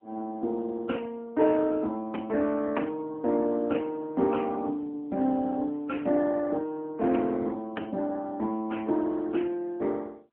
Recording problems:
phone line; 190 Hz to 3.2 kHz, AMR-NB

